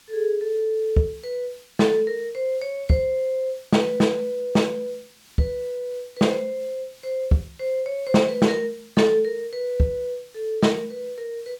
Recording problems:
background hiss; SNR 26 dB

